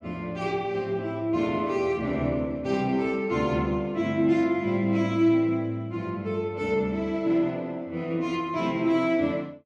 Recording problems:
none

